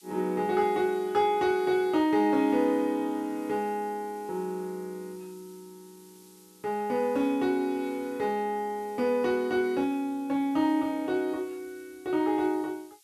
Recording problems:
hiss; slope +7 dB per octave, SNR 27 dB

